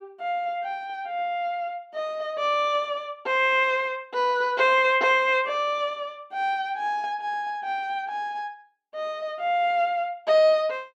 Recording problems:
none

